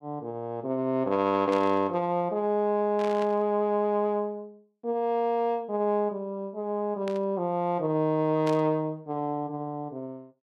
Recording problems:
static burst; 4 times, first at 1.5 s; peak -9 dB vs average level

